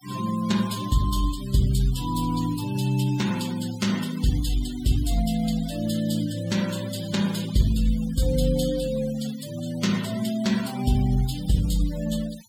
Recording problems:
denoising artefacts; signal-to-artefact ratio 15 dB

